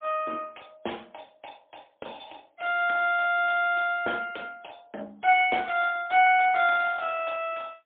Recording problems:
phone line; 260 Hz to 3.6 kHz, AMR-NB, then MP3

